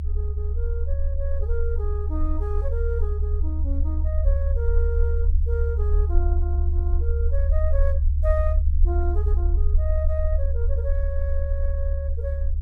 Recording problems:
low-frequency rumble; below 72 Hz, SNR -10 dB

